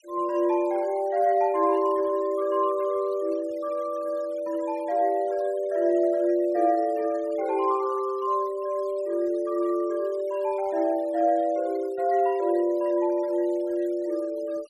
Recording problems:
denoising artefacts; signal-to-artefact ratio 26 dB

